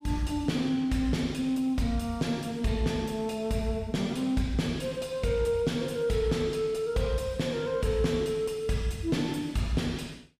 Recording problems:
distorted audio; soft clipping, signal-to-distortion ratio 10 dB

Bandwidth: 15 kHz